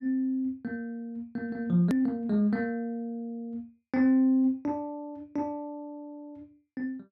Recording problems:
edit click; at 2 s

